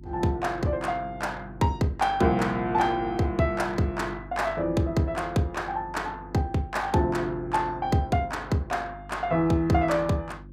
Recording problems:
hum; 50 Hz, harmonics up to 350 Hz, SNR 18 dB

